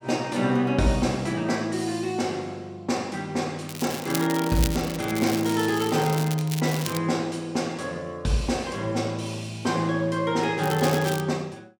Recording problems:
crackle; from 3.5 to 7 s and at 11 s; loose cable, SNR 9 dB

